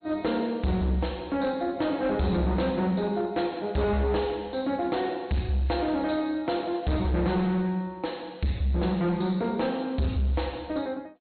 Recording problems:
treble cut off; nothing above 4.2 kHz
lossy compression; MP3, log-spectral distance 2 dB
distorted audio; hard clipping, signal-to-distortion ratio 10 dB

